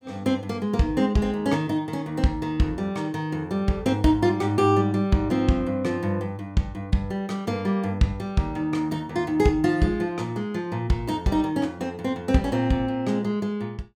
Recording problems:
none

